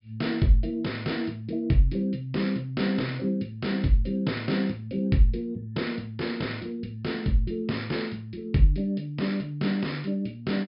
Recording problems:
treble missing; nothing above 5.5 kHz

